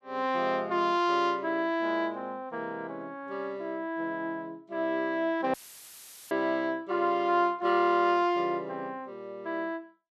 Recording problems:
dropout; at 5.5 s for 1 s; filled with static

